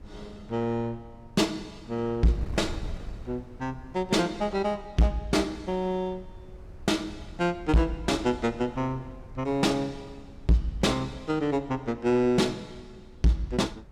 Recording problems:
distortion; hard clipping, uneven, signal-to-distortion ratio 7 dB
wind on the microphone; below 120 Hz, SNR 18 dB

